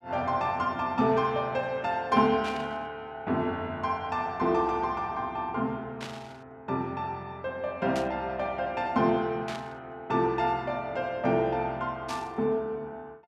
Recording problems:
static burst; 5 times, first at 2.5 s; peak -6 dB vs average level

